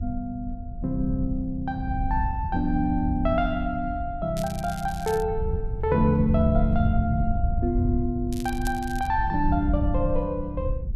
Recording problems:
wind noise; below 88 Hz, SNR 4 dB
crackling; at 4.5 s and at 8.5 s; loose cable, SNR 16 dB

